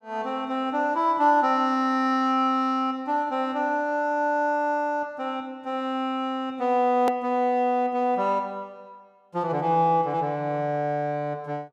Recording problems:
edit click; at 7 s

